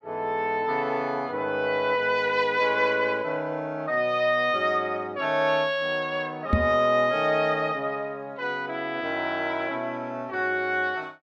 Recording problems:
knock on the microphone; at 6.5 s; peak +7 dB vs average level

